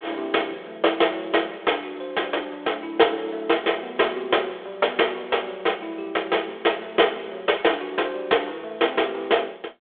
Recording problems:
telephone audio; 280 Hz to 3.5 kHz, G.726

